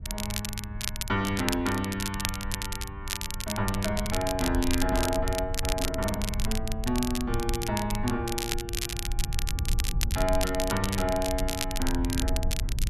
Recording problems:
rumble; below 72 Hz, SNR 5 dB
crackling; vinyl, SNR 4 dB

